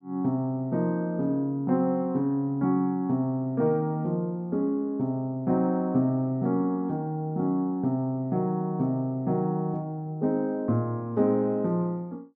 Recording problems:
none

